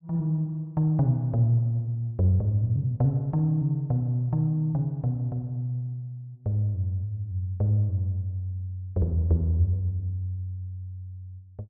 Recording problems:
none

